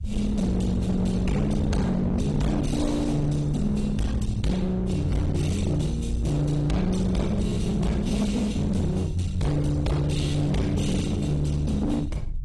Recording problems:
codec artefacts; AAC, log-spectral distance 2 dB, nothing above 11 kHz
distortion; hard clipping, uneven, signal-to-distortion ratio 6 dB
rumble; below 110 Hz, SNR 9 dB

